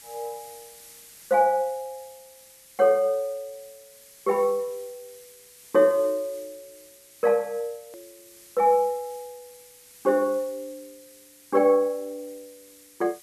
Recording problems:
background hiss; SNR 23 dB
edit click; at 8 s

